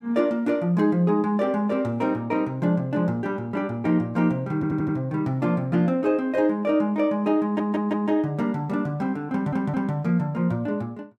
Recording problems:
stutter; at 4.5 s, at 7.5 s and at 9.5 s

